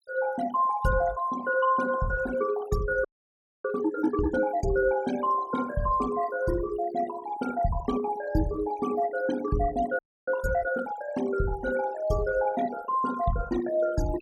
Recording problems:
noise reduction artefacts; signal-to-artefact ratio 14 dB
frozen audio; at 3 s for 0.5 s and at 10 s

